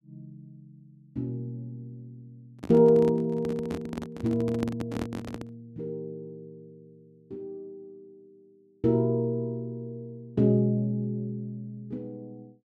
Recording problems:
microphone handling noise; from 2.5 to 5.5 s; peak -1 dB vs average level

